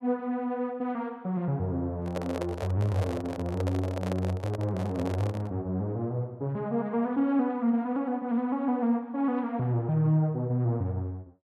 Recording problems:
handling noise; from 2 to 5.5 s; peak -1 dB vs average level

